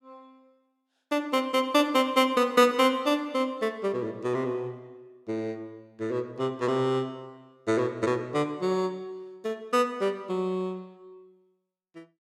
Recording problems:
none

